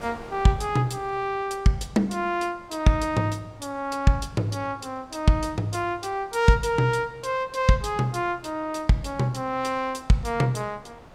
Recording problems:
wind on the microphone; below 1 kHz, SNR 24 dB

